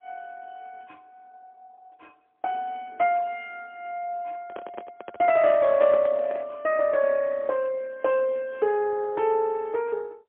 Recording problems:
phone line; 170 Hz to 3.6 kHz, AMR-NB, then MP3
microphone handling noise; from 4.5 to 6.5 s; peak -5 dB vs average level

